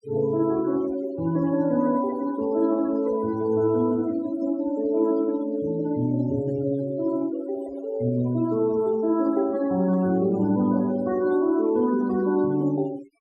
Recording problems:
denoising artefacts; signal-to-artefact ratio 20 dB

